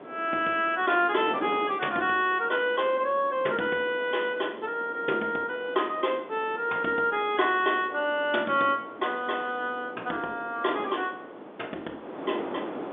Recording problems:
phone line; 240 Hz to 3.7 kHz, G.711
wind noise; below 820 Hz, SNR 13 dB

